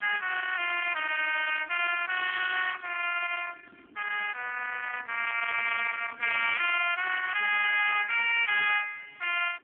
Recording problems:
telephone audio; 470 Hz to 3.2 kHz, AMR-NB
distorted audio; soft clipping, signal-to-distortion ratio 15 dB
wind noise; below 2.4 kHz, SNR 20 dB

